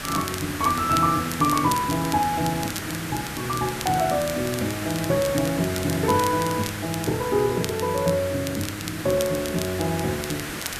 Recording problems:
hiss; SNR 8 dB
crackle; vinyl, SNR 12 dB

